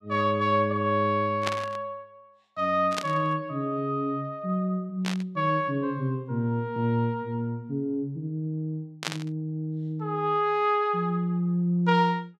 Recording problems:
burst of static; 4 times, first at 1.5 s; peak +2 dB vs average level

